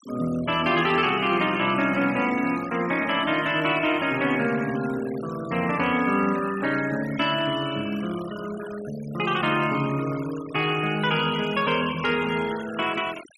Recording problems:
denoising artefacts; signal-to-artefact ratio 16 dB

